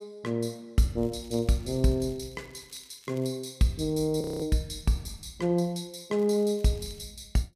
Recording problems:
crackle; from 1 to 3.5 s and at 6 s; loose cable, SNR 27 dB
audio freezing; at 4 s

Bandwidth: 14.5 kHz